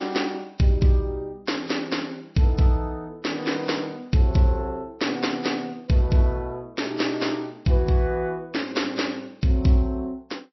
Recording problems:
lossy codec; MP3, log-spectral distance 3 dB, nothing above 5.7 kHz

